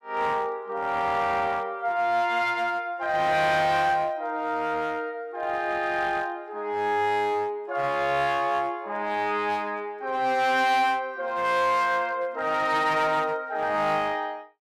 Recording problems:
distorted audio; hard clipping, uneven, signal-to-distortion ratio 11 dB

